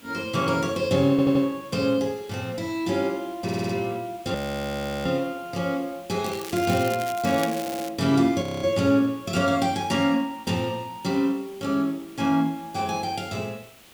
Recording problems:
background hiss; SNR 24 dB
audio stuttering; at 1 s, at 3.5 s and at 7.5 s
audio freezing; at 4.5 s for 0.5 s and at 8.5 s
crackle; from 6.5 to 8 s; loose cable, SNR 13 dB

